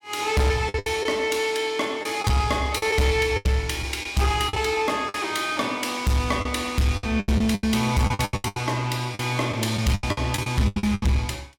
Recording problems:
distortion; soft clipping, signal-to-distortion ratio 12 dB
packet loss; 13% of the sound replaced, filled with the last packet

